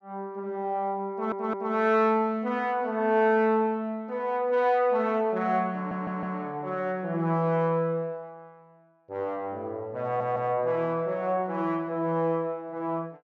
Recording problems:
stutter; at 1 s, at 6 s and at 10 s

